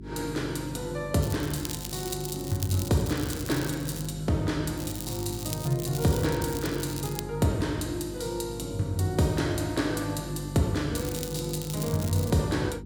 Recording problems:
hum; 50 Hz, harmonics up to 400 Hz, SNR 12 dB
crackle; from 1 to 4 s, from 5 to 7 s and from 11 to 12 s; loose cable, SNR 10 dB

